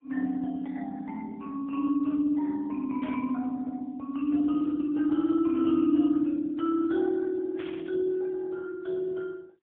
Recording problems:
phone line; 220 Hz to 2.9 kHz, AMR-NB, then MP3
static burst; at 3 s and at 7.5 s; peak -11 dB vs average level

